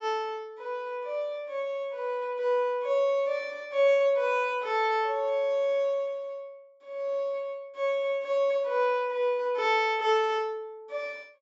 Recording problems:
treble missing; nothing above 8 kHz

